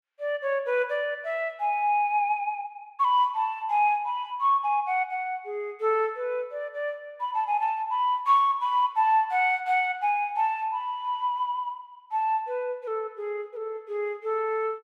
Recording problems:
none

